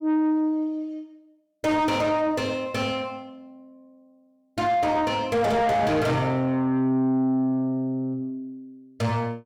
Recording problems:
distortion; soft clipping, signal-to-distortion ratio 7 dB

